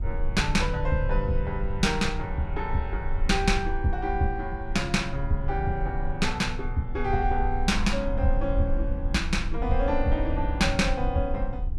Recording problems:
rumble; below 58 Hz, strongest tone 22 Hz, SNR 4 dB

